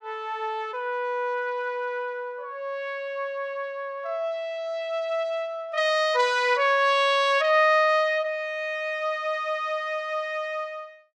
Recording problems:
none

